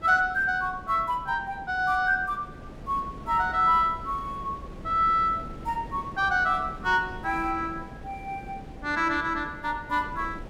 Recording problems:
wind on the microphone; below 370 Hz, SNR 16 dB

